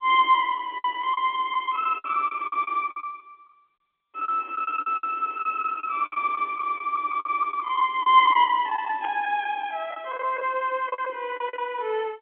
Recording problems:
phone line; 260 Hz to 3.3 kHz, G.711
lost packets; 13% of the sound replaced, filled with the last packet
burst of static; at 9 s; peak -11 dB vs average level

